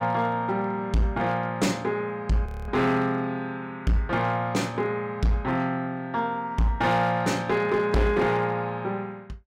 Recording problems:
distorted audio; hard clipping, signal-to-distortion ratio 11 dB
audio freezing; at 2.5 s

